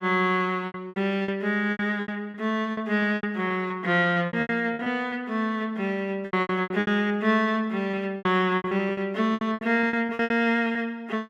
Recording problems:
lost packets; 17% of the sound replaced, filled with repeated pitch periods

